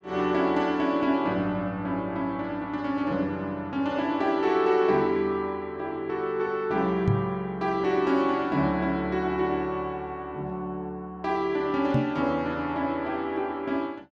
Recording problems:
microphone thump; at 7 s and at 12 s; peak +5 dB vs average level

